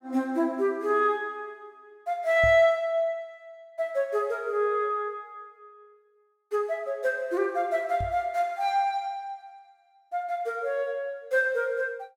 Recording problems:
microphone bump; at 2.5 s and at 8 s; peak -3 dB vs average level

